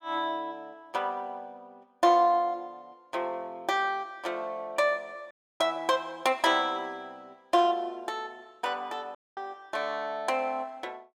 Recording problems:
dropout; at 5.5 s and at 9 s

